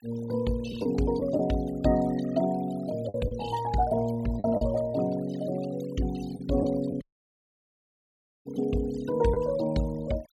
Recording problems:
noise reduction artefacts; signal-to-artefact ratio 18 dB
lost packets; 3% of the sound replaced, filled with the last packet
dropout; at 7 s for 1.5 s

